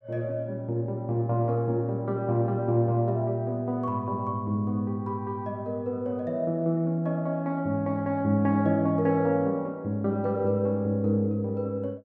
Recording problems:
none

